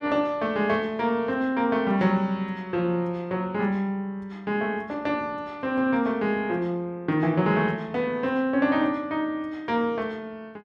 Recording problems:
none

